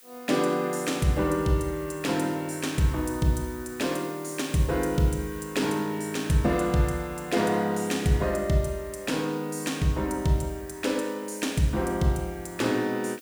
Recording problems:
background hiss; SNR 21 dB

